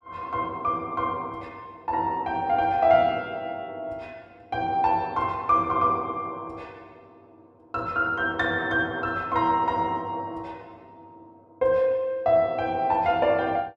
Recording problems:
none

